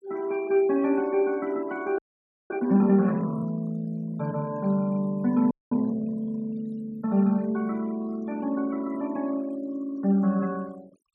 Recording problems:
denoising artefacts; signal-to-artefact ratio 24 dB
audio freezing; at 2 s for 0.5 s and at 5.5 s

